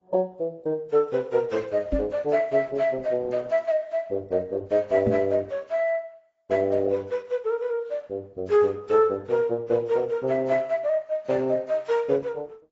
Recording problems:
lossy codec; Opus, then AAC, log-spectral distance 2 dB, nothing above 7.6 kHz
knock on the microphone; at 2 s and at 5 s; peak +3 dB vs average level

